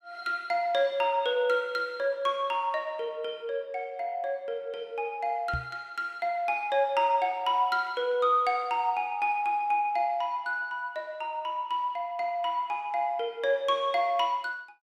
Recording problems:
microphone thump; at 5.5 s; peak -2 dB vs average level

